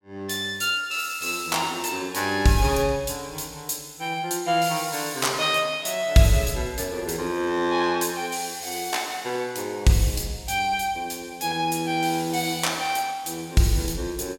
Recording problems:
none

